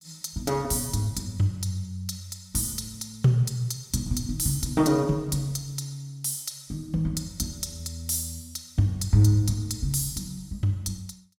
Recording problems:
none

